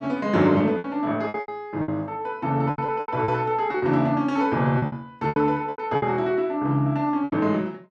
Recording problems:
lost packets; 12% of the sound replaced, filled with repeated pitch periods

